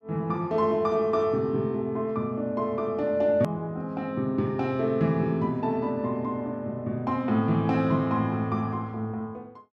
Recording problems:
click at an edit; at 3.5 s

